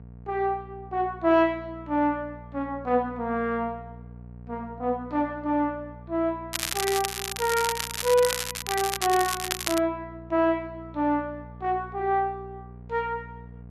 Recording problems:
hum; 60 Hz, harmonics up to 720 Hz, SNR 17 dB
crackle; from 6.5 to 10 s; loose cable, SNR 3 dB

